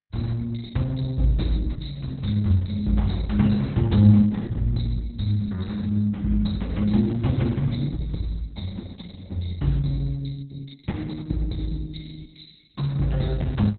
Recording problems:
lossy codec; Opus, log-spectral distance 4 dB, nothing above 4.1 kHz

